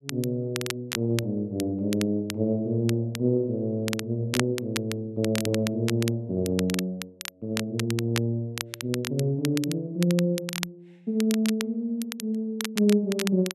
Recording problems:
crackling; vinyl, SNR 9 dB

